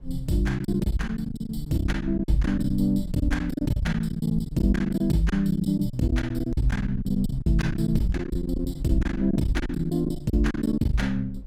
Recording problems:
low-frequency rumble; below 58 Hz, SNR 13 dB
packet loss; 17% of the sound replaced, filled with silence

